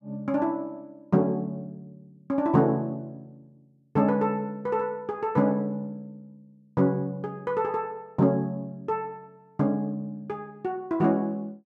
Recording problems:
none

